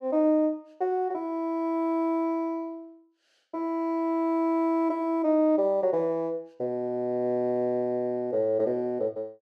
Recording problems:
none

